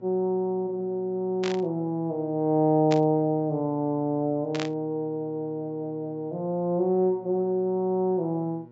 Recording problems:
treble cut off; nothing above 7.6 kHz
electrical hum; 60 Hz, harmonics up to 1.4 kHz, SNR 25 dB
static burst; at 1.5 s, at 3 s and at 4.5 s; peak -3 dB vs average level

